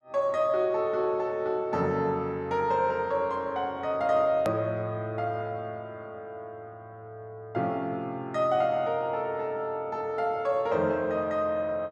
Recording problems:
edit click; at 4.5 s

